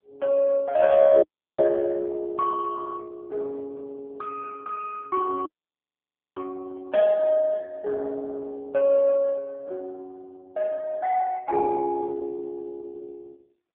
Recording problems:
telephone audio; 300 Hz to 2.2 kHz, AMR-NB
audio cutting out; at 1 s and at 5.5 s for 1 s

